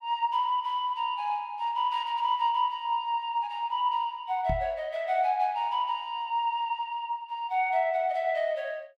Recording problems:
microphone bump; at 4.5 s; peak -1 dB vs average level

